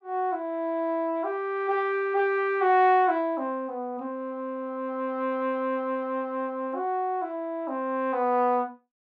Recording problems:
none

